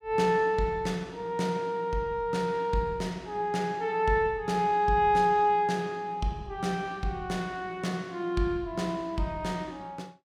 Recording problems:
none

